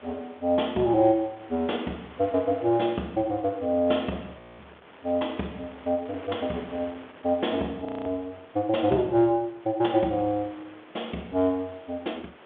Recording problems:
telephone audio; 220 Hz to 3.7 kHz, G.726
wind noise; below 2.1 kHz, SNR 21 dB
frozen audio; at 4.5 s and at 8 s

